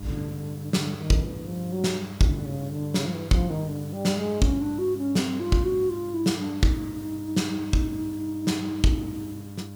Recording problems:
hum; 50 Hz, harmonics up to 1 kHz, SNR 13 dB
background hiss; slope -1 dB per octave, SNR 22 dB

